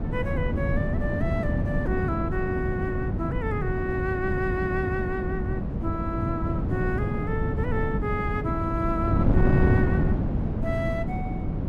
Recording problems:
wind on the microphone; below 230 Hz, SNR -3 dB

